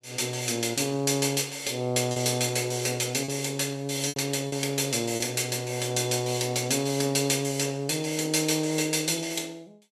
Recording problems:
packet loss; 2% of the sound replaced, filled with repeated pitch periods

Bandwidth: 13 kHz